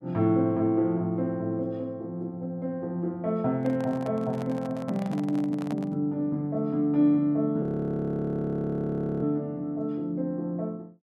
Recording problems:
microphone handling noise; from 3.5 to 6 s; peak -7 dB vs average level
frozen audio; at 7.5 s for 1.5 s

